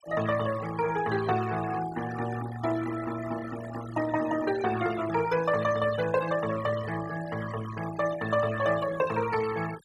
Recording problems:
noise reduction artefacts; signal-to-artefact ratio 12 dB

